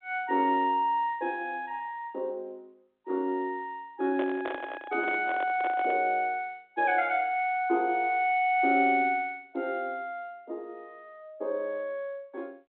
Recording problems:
telephone audio; 240 Hz to 3.7 kHz, G.726
handling noise; from 4 to 6 s; peak -3 dB vs average level

